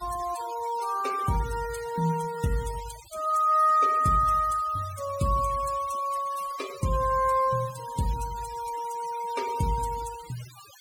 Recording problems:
noise reduction artefacts; signal-to-artefact ratio 17 dB

